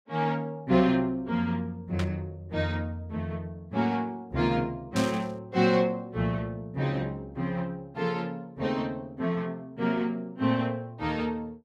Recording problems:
static burst; at 2 s and at 5 s; peak -2 dB vs average level

